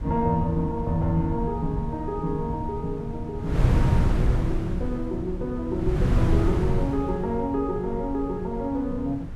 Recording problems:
rumble; below 98 Hz, SNR 11 dB
wind on the microphone; below 150 Hz, SNR 0 dB

